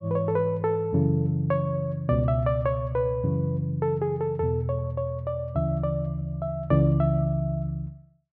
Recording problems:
none

